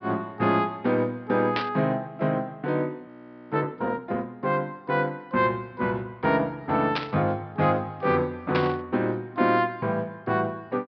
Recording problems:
treble cut off; nothing above 5.5 kHz
static burst; at 1.5 s, at 7 s and at 8.5 s; peak +2 dB vs average level
frozen audio; at 3 s

